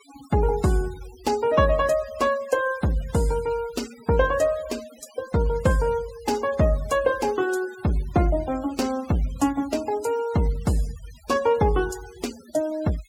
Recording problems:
noise reduction artefacts; signal-to-artefact ratio 19 dB

